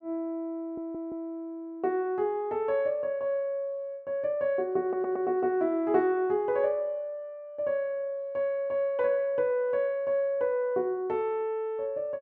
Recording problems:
stutter; at 0.5 s and at 5 s

